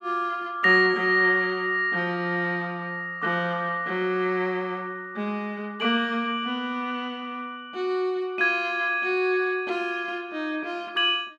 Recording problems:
none

